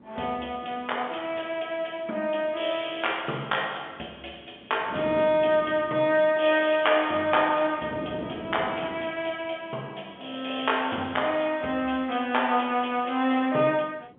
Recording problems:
telephone audio; 220 Hz to 3.5 kHz, G.711
wind on the microphone; below 470 Hz, SNR 17 dB

